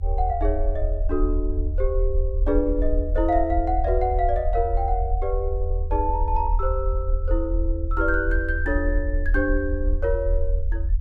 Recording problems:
rumble; below 64 Hz, strongest tone 36 Hz, SNR 1 dB

